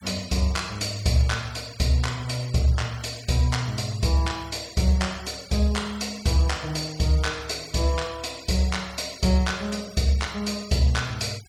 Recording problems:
noise reduction artefacts; signal-to-artefact ratio 20 dB

